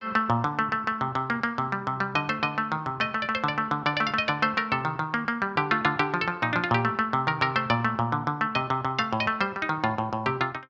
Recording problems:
none

